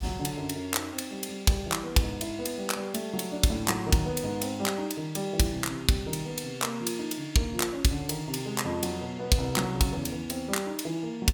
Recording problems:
none

